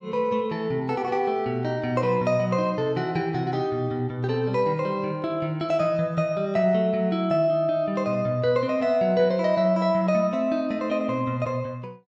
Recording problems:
none

